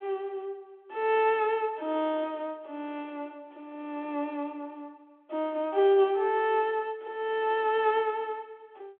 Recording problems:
telephone audio; 280 Hz to 3.5 kHz, G.726

